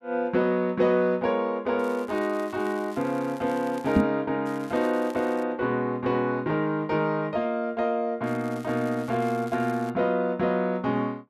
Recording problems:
crackle; from 2 to 4 s, at 4.5 s and from 8 to 10 s; loose cable, SNR 24 dB
microphone bump; at 4 s; peak +8 dB vs average level

